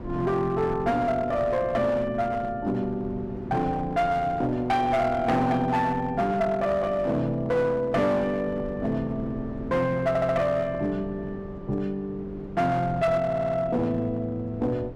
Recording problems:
distorted audio; hard clipping, uneven, signal-to-distortion ratio 10 dB
wind noise; below 360 Hz, SNR 16 dB
audio stuttering; at 10 s and at 13 s

